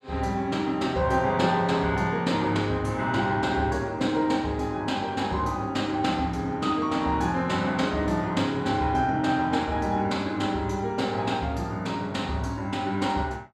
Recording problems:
none

